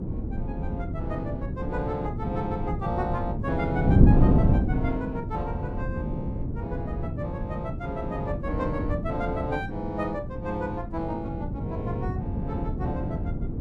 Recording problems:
wind noise; below 220 Hz, SNR -4 dB

